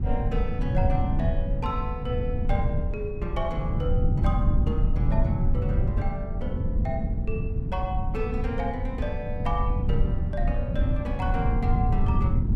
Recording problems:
rumble; below 120 Hz, SNR -5 dB
wind noise; below 900 Hz, SNR 22 dB

